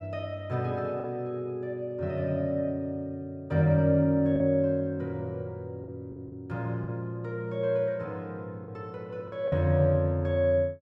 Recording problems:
lost packets; 3% of the sound replaced, filled with the last packet

